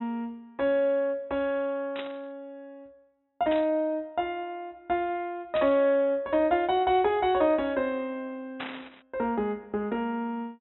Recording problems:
treble cut off; nothing above 3.9 kHz
static burst; 4 times, first at 2 s; peak -5 dB vs average level

